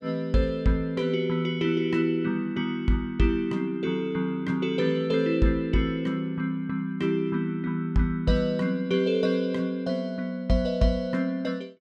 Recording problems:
none

